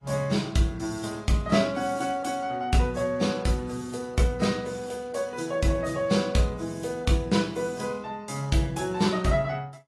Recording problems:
codec artefacts; AAC, log-spectral distance 3 dB, nothing above 11.6 kHz

